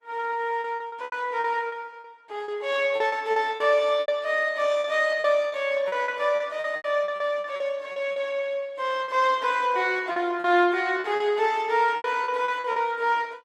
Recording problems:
lossy codec; Opus, log-spectral distance 2 dB
packet loss; 12% of the sound replaced, filled with repeated pitch periods

